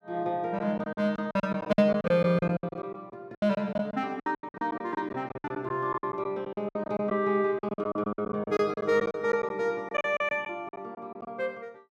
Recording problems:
packet loss; 17% of the sound replaced, filled with silence

